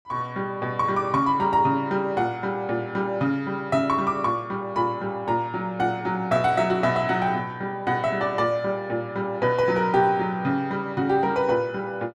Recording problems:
none

